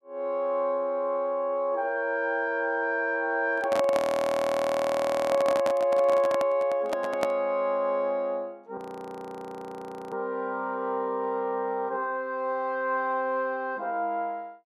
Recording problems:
microphone handling noise; from 3.5 to 7.5 s; peak +2 dB vs average level
audio freezing; at 4 s for 1.5 s and at 9 s for 1.5 s

